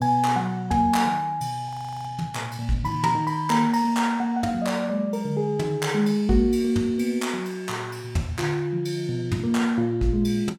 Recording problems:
frozen audio; at 1.5 s

